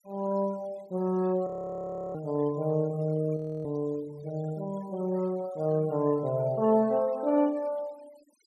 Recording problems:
denoising artefacts; signal-to-artefact ratio 25 dB
audio freezing; at 1.5 s for 0.5 s and at 3.5 s

